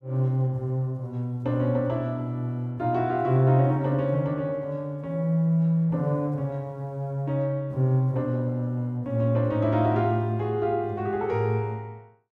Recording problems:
none

